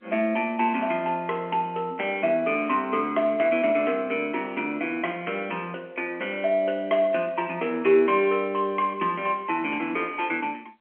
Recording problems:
phone line; 240 Hz to 3.2 kHz, G.711

